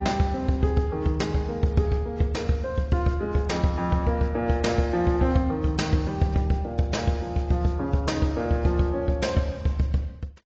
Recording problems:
codec artefacts; AAC, log-spectral distance 2 dB

